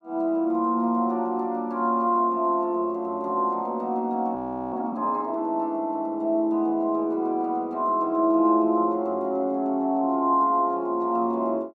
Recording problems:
frozen audio; at 4.5 s

